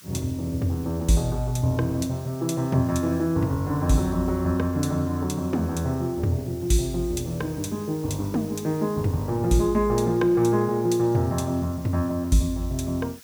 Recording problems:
hiss; SNR 22 dB

